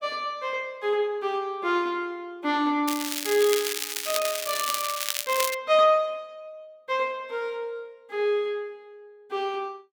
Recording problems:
crackling; from 3 to 5.5 s; loose cable, SNR 2 dB

